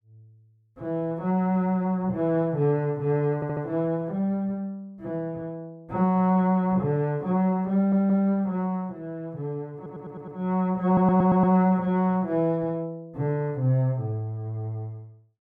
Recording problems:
audio stuttering; 4 times, first at 3.5 s

